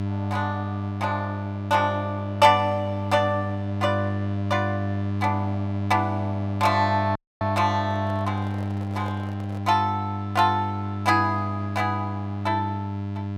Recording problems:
electrical hum; 50 Hz, harmonics up to 1 kHz, SNR 4 dB
dropout; at 7 s
microphone handling noise; from 8 to 9.5 s; peak -12 dB vs average level

